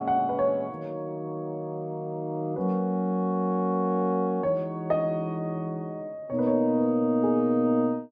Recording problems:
none

